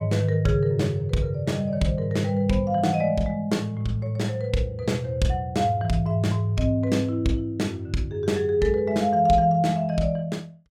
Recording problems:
none

